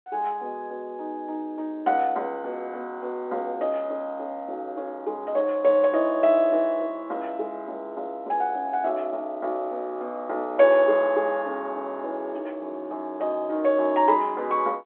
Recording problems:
phone line; 280 Hz to 3.8 kHz, G.711

